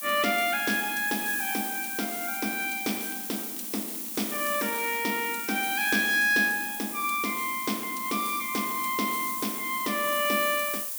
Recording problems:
hiss; slope +2 dB per octave, SNR 4 dB
crackle; from 1.5 to 6 s; loose cable, SNR 21 dB

